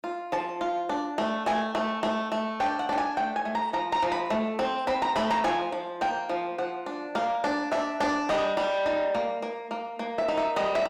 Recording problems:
distorted audio; soft clipping, signal-to-distortion ratio 12 dB

